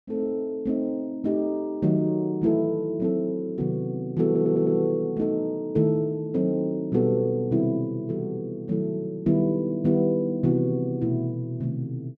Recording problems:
stutter; at 4.5 s

